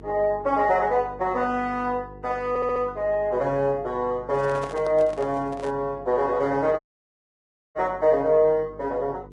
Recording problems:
codec artefacts; Vorbis, log-spectral distance 2 dB
hum; 50 Hz, harmonics up to 450 Hz, SNR 21 dB
audio stuttering; at 2.5 s
handling noise; from 4.5 to 5.5 s; peak -6 dB vs average level
dropout; at 7 s for 1 s

